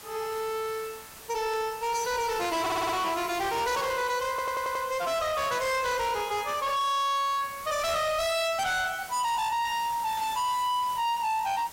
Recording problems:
distortion; hard clipping, uneven, signal-to-distortion ratio 8 dB
hiss; slope -1 dB per octave, SNR 16 dB
static burst; 4 times, first at 1.5 s; peak -13 dB vs average level
audio stuttering; at 2.5 s and at 4.5 s

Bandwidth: 16 kHz